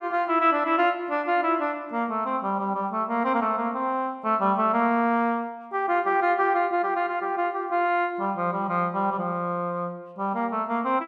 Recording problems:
none

